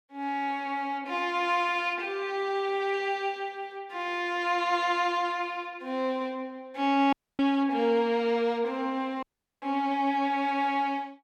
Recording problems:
dropout; at 7 s and at 9 s

